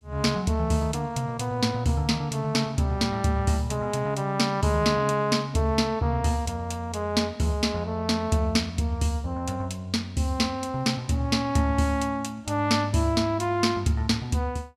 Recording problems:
none

